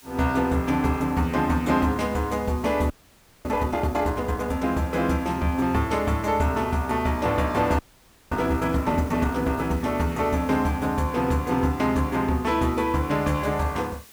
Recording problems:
background hiss; slope 0 dB per octave, SNR 23 dB
frozen audio; at 3 s for 0.5 s and at 8 s for 0.5 s

